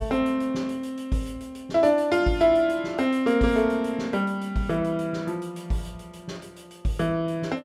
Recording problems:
none

